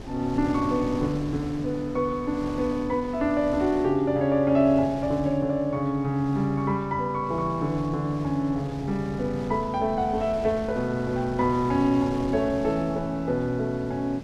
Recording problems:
wind on the microphone; below 500 Hz, SNR 14 dB

